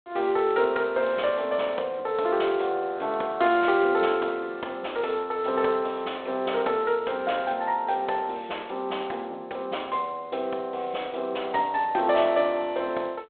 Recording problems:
phone line; 300 Hz to 3.7 kHz, G.726

